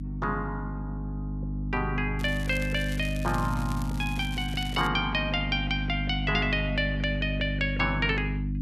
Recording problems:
hum; 50 Hz, harmonics up to 300 Hz, SNR 3 dB
crackling; from 2 to 5 s; loose cable, SNR 16 dB

